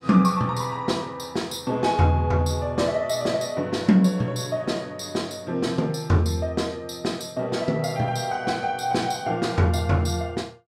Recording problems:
none

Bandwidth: 16 kHz